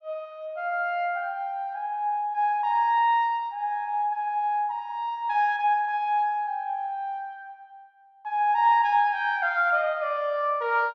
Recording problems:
none

